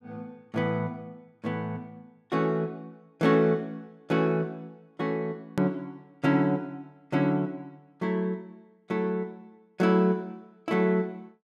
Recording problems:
edit click; at 5.5 s

